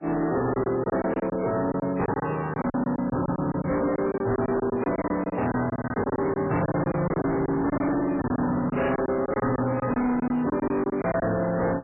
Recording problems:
codec artefacts; MP3, log-spectral distance 3 dB, nothing above 2.7 kHz
distortion; hard clipping, signal-to-distortion ratio 7 dB
lost packets; 13% of the sound replaced, filled with silence

